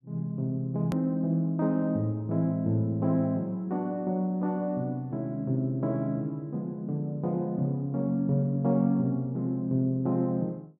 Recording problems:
hard cut with a click; at 1 s

